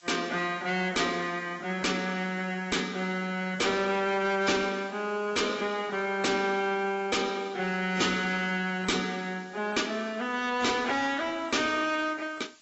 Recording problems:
codec artefacts; AAC, log-spectral distance 6 dB, nothing above 7.8 kHz
distorted audio; hard clipping, uneven, signal-to-distortion ratio 6 dB
hiss; slope +2 dB per octave, SNR 27 dB

